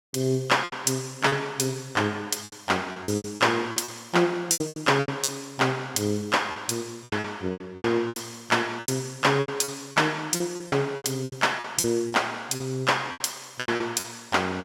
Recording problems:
packet loss; 14% of the sound replaced, filled with repeated pitch periods

